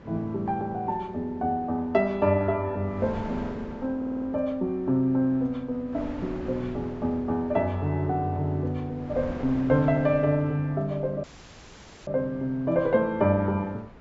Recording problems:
low-pass filter; nothing above 8 kHz
wind on the microphone; below 640 Hz, SNR 17 dB
stutter; at 4 s
dropout; at 11 s for 1 s

